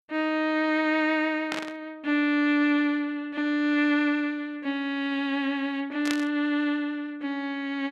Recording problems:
static burst; at 1.5 s and at 6 s; peak -1 dB vs average level

